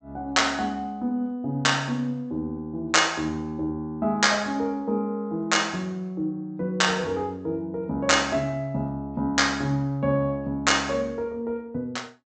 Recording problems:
treble cut off; nothing above 8 kHz

